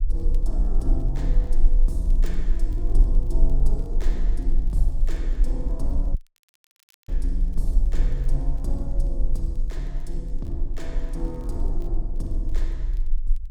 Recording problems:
rumble; below 36 Hz, strongest tone 20 Hz, SNR -8 dB
crackle; vinyl, SNR 28 dB
dropout; at 6 s for 1 s

